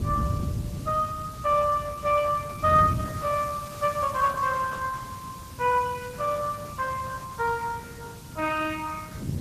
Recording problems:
lossy codec; Opus, log-spectral distance 5 dB
hiss; slope +1 dB per octave, SNR 20 dB
wind on the microphone; below 170 Hz, SNR 10 dB

